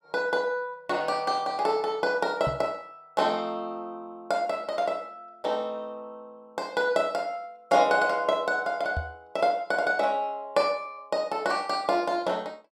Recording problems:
microphone thump; at 2.5 s and at 9 s; peak -1 dB vs average level

